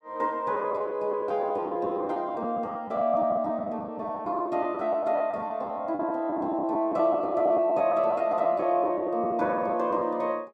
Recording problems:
packet loss; 13% of the sound replaced, filled with the last packet

